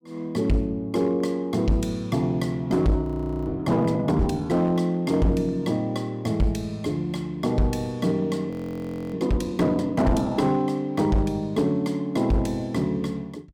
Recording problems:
distorted audio; hard clipping, signal-to-distortion ratio 11 dB
audio freezing; at 3 s and at 8.5 s for 0.5 s

